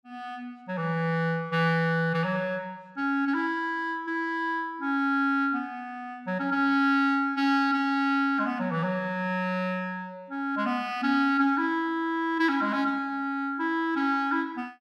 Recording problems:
none

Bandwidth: 15 kHz